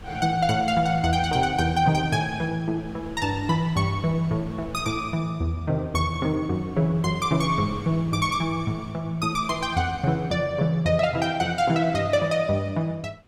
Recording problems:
wind on the microphone; below 380 Hz, SNR 20 dB

